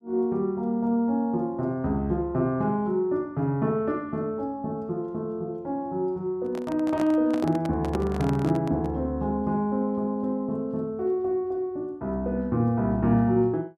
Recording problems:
microphone handling noise; from 6.5 to 9 s; peak -3 dB vs average level

